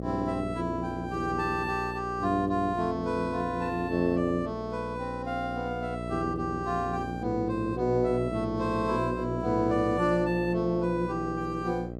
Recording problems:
hum; 60 Hz, harmonics up to 780 Hz, SNR 8 dB

